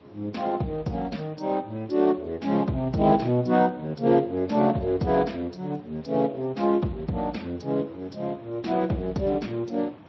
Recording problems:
lossy compression; MP3, then Speex, log-spectral distance 3 dB
hiss; SNR 25 dB

